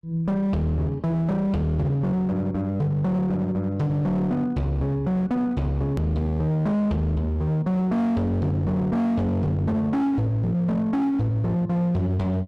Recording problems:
distorted audio; hard clipping, signal-to-distortion ratio 8 dB
edit click; at 6 s

